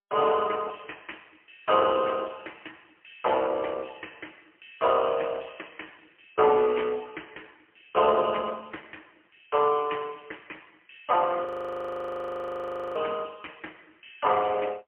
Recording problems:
telephone audio; 280 Hz to 3.2 kHz, AMR-NB, then MP3
frozen audio; at 11 s for 1.5 s

